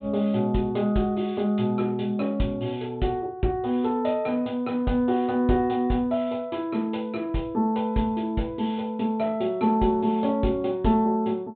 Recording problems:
treble cut off; nothing above 4 kHz

